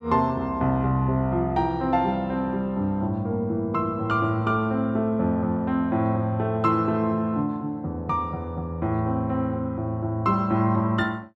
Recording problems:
none

